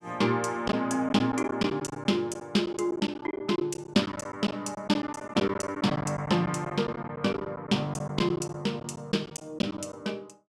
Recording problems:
packet loss; 11% of the sound replaced, filled with silence

